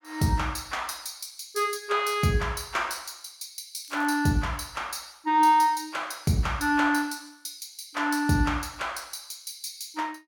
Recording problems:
crackle; at 4 s; loose cable, SNR 27 dB

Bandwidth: 17.5 kHz